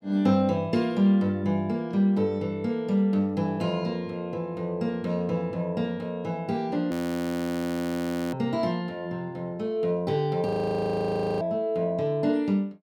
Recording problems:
audio freezing; at 7 s for 1.5 s and at 10 s for 1 s

